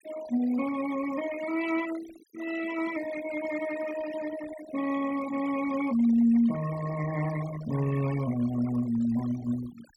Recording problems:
noise reduction artefacts; signal-to-artefact ratio 13 dB

